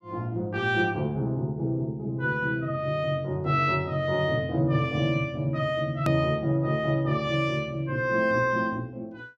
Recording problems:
edit click; at 6 s

